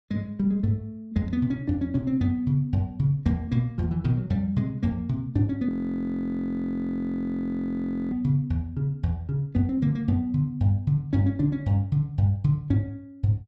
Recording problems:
frozen audio; at 5.5 s for 2.5 s

